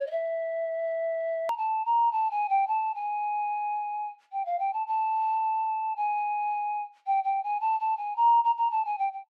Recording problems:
edit click; at 1.5 s

